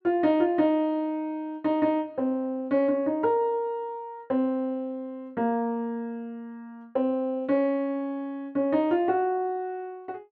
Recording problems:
none

